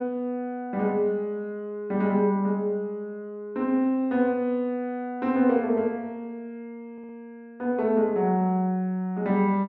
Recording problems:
audio stuttering; at 7 s

